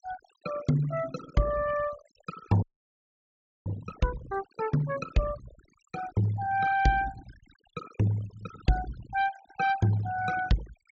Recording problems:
treble missing; nothing above 8 kHz
denoising artefacts; signal-to-artefact ratio 16 dB
audio freezing; at 2.5 s for 1 s

